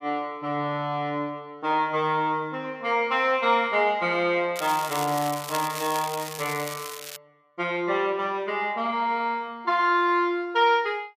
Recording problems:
crackling; from 4.5 to 7 s; loose cable, SNR 10 dB

